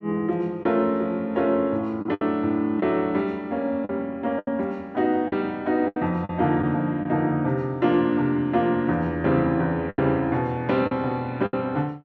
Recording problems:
lost packets; 5% of the sound replaced, filled with the last packet

